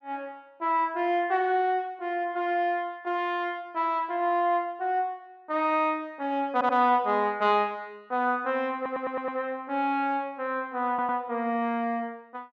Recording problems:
stutter; at 6.5 s, at 9 s and at 11 s

